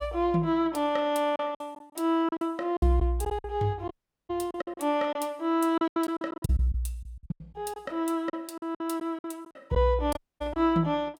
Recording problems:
packet loss; 12% of the sound replaced, filled with silence
audio cutting out; at 4 s and at 10 s

